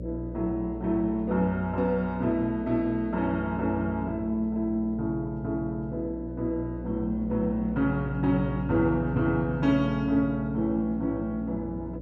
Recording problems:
hum; 60 Hz, harmonics up to 600 Hz, SNR 10 dB

